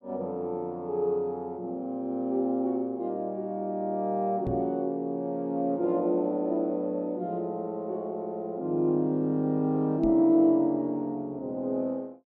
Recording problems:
knock on the microphone; at 4.5 s and at 10 s; peak -2 dB vs average level

